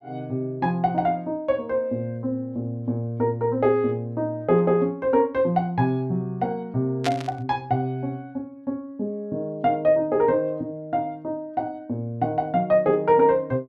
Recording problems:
burst of static; at 7 s; peak 0 dB vs average level

